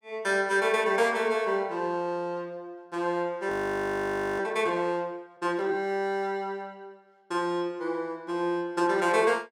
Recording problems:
audio freezing; at 3.5 s for 1 s

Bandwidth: 17 kHz